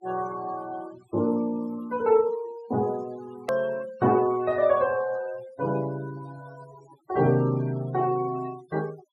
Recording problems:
noise reduction artefacts; signal-to-artefact ratio 20 dB
click at an edit; at 3.5 s

